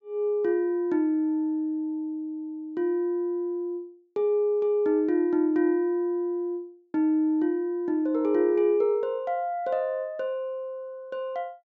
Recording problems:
treble missing; nothing above 8 kHz

